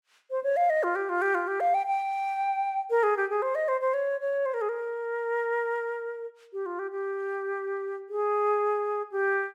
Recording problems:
none

